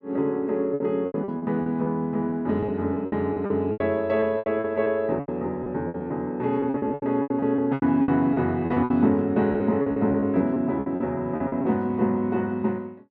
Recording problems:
packet loss; 15% of the sound replaced, filled with repeated pitch periods

